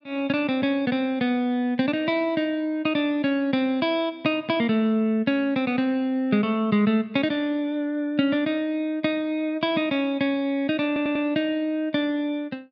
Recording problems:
stutter; at 11 s

